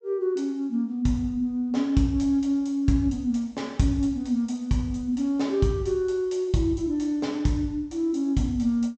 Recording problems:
treble cut off; nothing above 8 kHz

